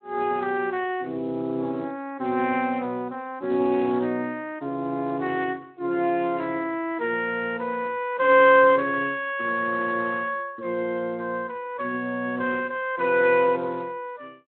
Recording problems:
phone line; 240 Hz to 3.6 kHz, Speex

